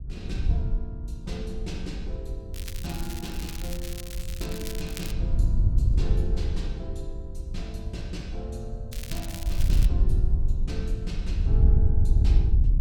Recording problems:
wind on the microphone; below 76 Hz, SNR -10 dB
crackling; from 2.5 to 5 s and at 9 s; loose cable, SNR 2 dB

